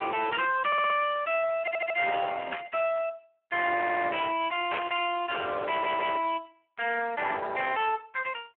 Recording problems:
phone line; 300 Hz to 3.5 kHz, Speex
distorted audio; soft clipping, signal-to-distortion ratio 11 dB
audio stuttering; 4 times, first at 0.5 s
static burst; at 2.5 s and at 4.5 s; peak 0 dB vs average level

